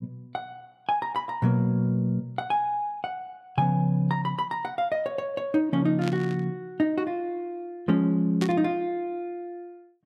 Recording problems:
burst of static; at 6 s and at 8.5 s; peak -4 dB vs average level

